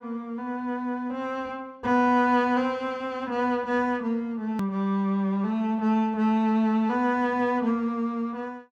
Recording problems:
edit click; at 4.5 s

